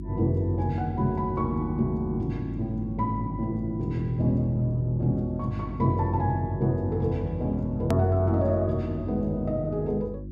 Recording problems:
electrical hum; 50 Hz, harmonics up to 350 Hz, SNR 10 dB
click at an edit; at 8 s

